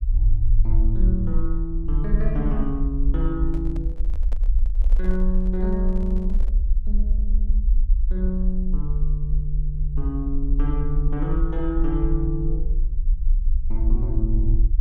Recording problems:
low-frequency rumble; below 46 Hz, SNR -4 dB
handling noise; from 3.5 to 6.5 s; peak -9 dB vs average level

